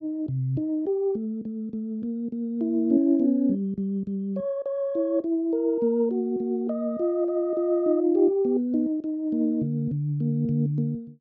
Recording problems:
none

